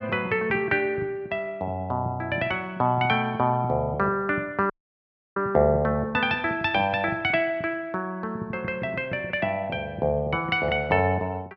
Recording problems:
dropout; at 4.5 s for 0.5 s

